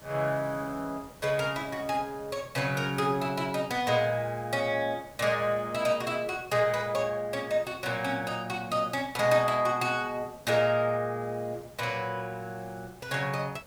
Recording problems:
background hiss; SNR 23 dB

